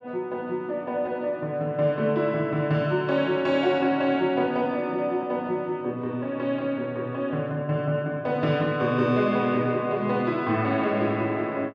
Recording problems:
none

